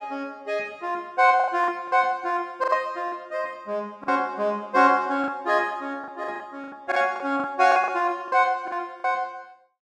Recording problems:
lost packets; 9% of the sound replaced, filled with the last packet

